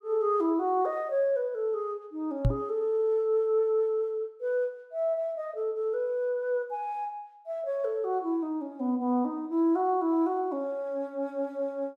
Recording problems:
microphone bump; at 2.5 s; peak +7 dB vs average level

